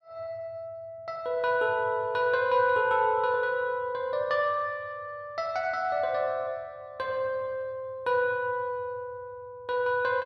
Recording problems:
none

